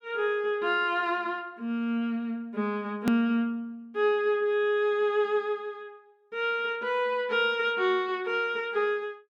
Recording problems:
click at an edit; at 3 s

